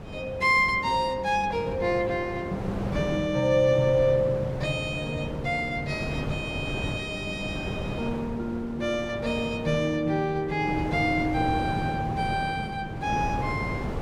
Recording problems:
wind on the microphone; below 520 Hz, SNR 8 dB

